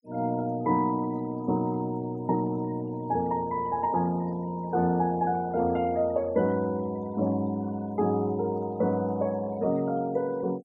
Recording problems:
noise reduction artefacts; signal-to-artefact ratio 24 dB

